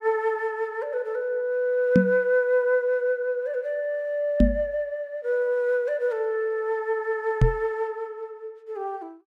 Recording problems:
knock on the microphone; at 2 s, at 4.5 s and at 7.5 s; peak +10 dB vs average level

